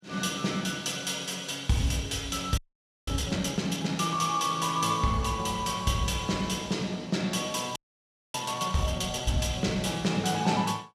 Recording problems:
audio freezing; at 2.5 s and at 8 s for 0.5 s

